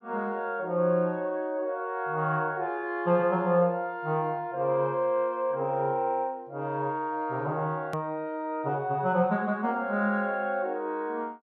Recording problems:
hard cut with a click; at 8 s

